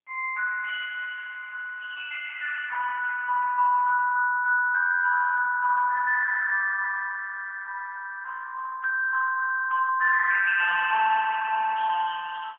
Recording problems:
phone line; 990 Hz to 2.1 kHz, AMR-NB, then MP3

